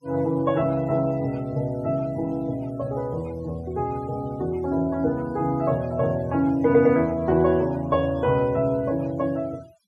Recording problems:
noise reduction artefacts; signal-to-artefact ratio 26 dB

